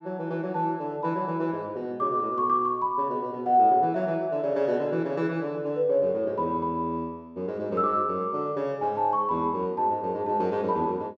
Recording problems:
none

